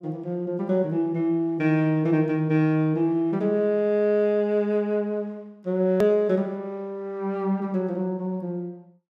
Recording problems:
hard cut with a click; at 6 s

